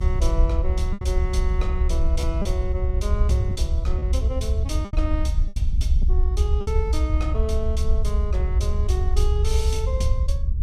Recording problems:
rumble; below 70 Hz, SNR -7 dB
packet loss; 4% of the sound replaced, filled with repeated pitch periods

